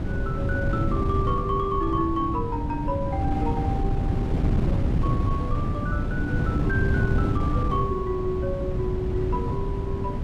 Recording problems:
wind on the microphone; below 200 Hz, SNR -3 dB

